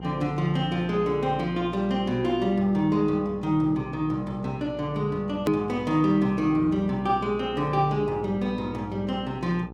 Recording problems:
electrical hum; 60 Hz, harmonics up to 1.3 kHz, SNR 15 dB
click at an edit; at 5.5 s

